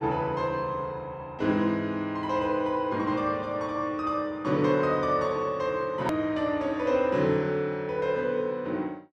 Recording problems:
edit click; at 6 s

